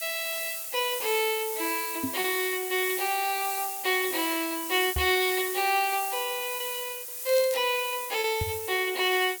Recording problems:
background hiss; slope +2 dB per octave, SNR 5 dB
lost packets; 4% of the sound replaced, filled with repeated pitch periods
microphone thump; at 2 s, at 5 s and at 8.5 s; peak 0 dB vs average level
crackle; at 7.5 s; loose cable, SNR 15 dB

